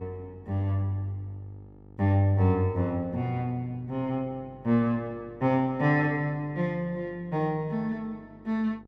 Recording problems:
electrical hum; 50 Hz, harmonics up to 950 Hz, SNR 23 dB

